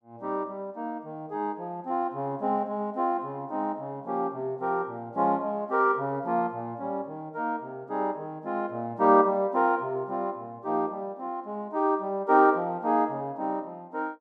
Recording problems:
none

